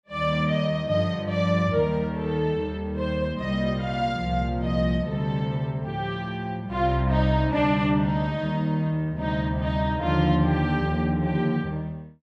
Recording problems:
none

